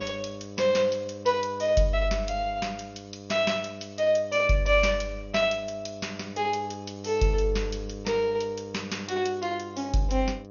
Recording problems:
lossy codec; MP2, log-spectral distance 5 dB, nothing above 6.7 kHz
hum; 50 Hz, harmonics up to 1.3 kHz, SNR 15 dB

